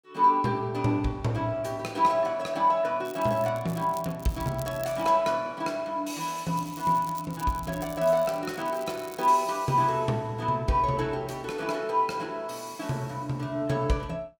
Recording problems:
crackle; from 3 to 5 s and from 6.5 to 9.5 s; loose cable, SNR 19 dB

